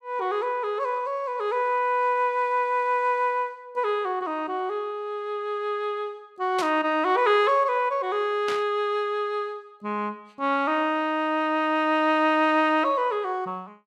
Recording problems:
static burst; at 6.5 s and at 8.5 s; peak -4 dB vs average level

